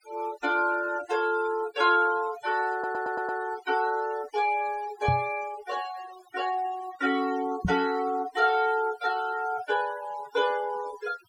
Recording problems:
noise reduction artefacts; signal-to-artefact ratio 17 dB
stutter; at 2.5 s
knock on the microphone; at 5 s and at 7.5 s; peak +4 dB vs average level

